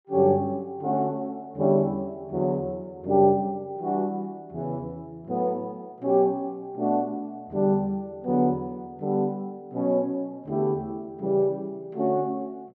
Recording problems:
none

